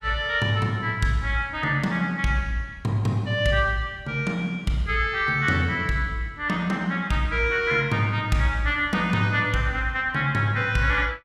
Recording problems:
none

